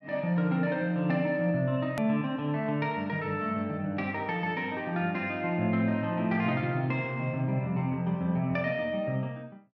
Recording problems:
click at an edit; at 2 s

